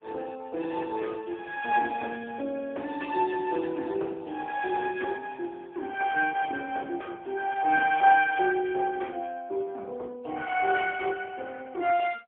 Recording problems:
phone line; 260 Hz to 2.3 kHz, AMR-NB, then MP3

